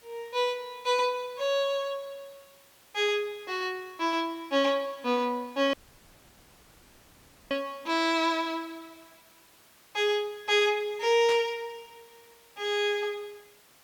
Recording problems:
hiss; slope -1 dB per octave, SNR 28 dB
audio cutting out; at 5.5 s for 2 s
burst of static; at 11 s; peak -6 dB vs average level

